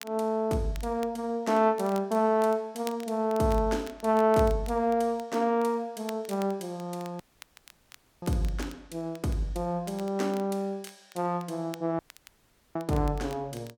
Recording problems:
crackle; vinyl, SNR 23 dB
dropout; at 7 s for 1 s and at 12 s for 1 s

